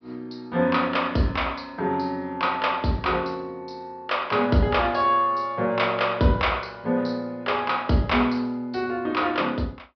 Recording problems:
low-pass filter; nothing above 5.5 kHz

